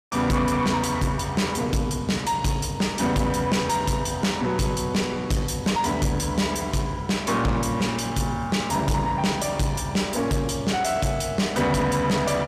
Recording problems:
distorted audio; soft clipping, signal-to-distortion ratio 7 dB

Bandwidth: 14.5 kHz